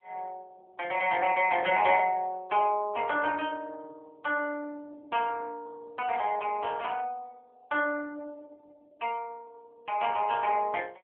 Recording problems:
phone line; 320 Hz to 3.1 kHz, AMR-NB

